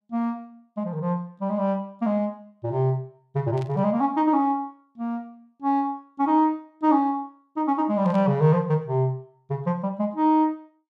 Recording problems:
burst of static; at 3.5 s and at 8 s; peak -15 dB vs average level

